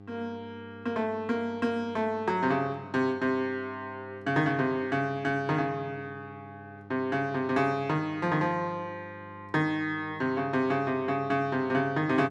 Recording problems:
hum; 50 Hz, harmonics up to 1.2 kHz, SNR 19 dB

